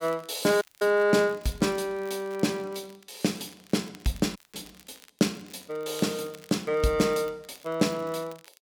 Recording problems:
crackle; vinyl, SNR 25 dB
audio cutting out; at 0.5 s and at 4.5 s

